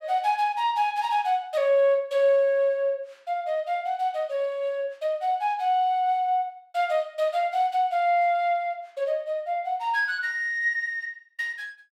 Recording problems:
none

